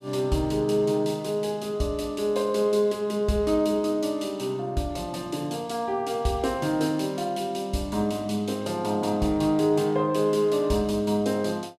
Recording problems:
none

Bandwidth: 15 kHz